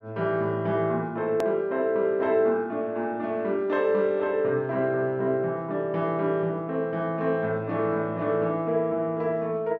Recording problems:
hard cut with a click; at 1.5 s

